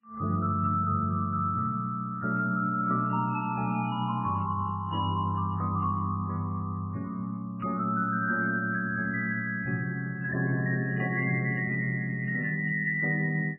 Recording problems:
codec artefacts; MP3, then MP3, log-spectral distance 3 dB, nothing above 2.9 kHz

